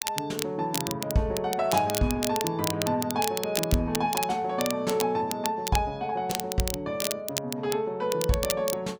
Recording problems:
crackle; vinyl, SNR 5 dB

